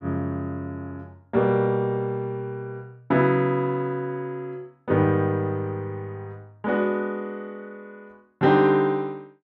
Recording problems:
none

